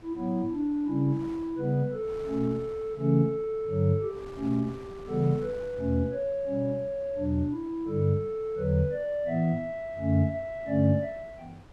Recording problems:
wind noise; below 750 Hz, SNR 22 dB

